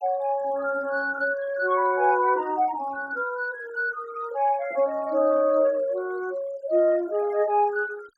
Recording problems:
denoising artefacts; signal-to-artefact ratio 25 dB

